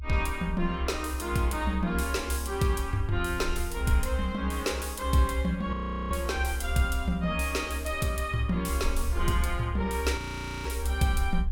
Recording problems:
rumble; below 68 Hz, strongest tone 66 Hz, SNR 4 dB
audio freezing; at 5.5 s and at 10 s

